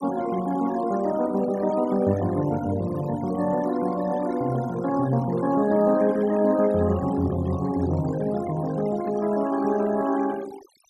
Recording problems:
noise reduction artefacts; signal-to-artefact ratio 16 dB

